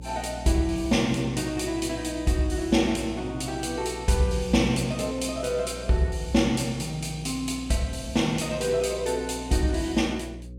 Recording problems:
electrical hum; 60 Hz, harmonics up to 540 Hz, SNR 14 dB

